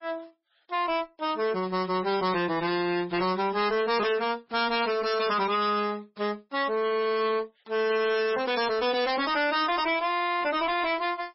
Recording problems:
codec artefacts; MP3, then MP3, log-spectral distance 5 dB, nothing above 5.5 kHz
distorted audio; hard clipping, signal-to-distortion ratio 6 dB

